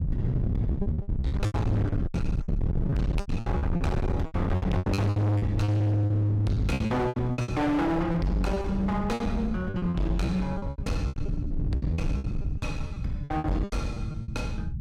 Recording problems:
distortion; hard clipping, signal-to-distortion ratio 6 dB
rumble; below 150 Hz, SNR 4 dB
packet loss; 18% of the sound replaced, filled with repeated pitch periods

